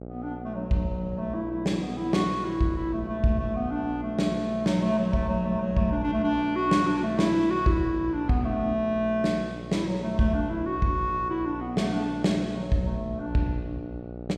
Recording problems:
hum; 60 Hz, harmonics up to 900 Hz, SNR 13 dB

